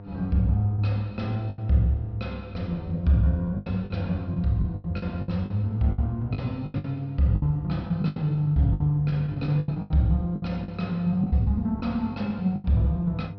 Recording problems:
treble cut off; nothing above 5.5 kHz
hum; 50 Hz, harmonics up to 900 Hz, SNR 15 dB
packet loss; 11% of the sound replaced, filled with the last packet

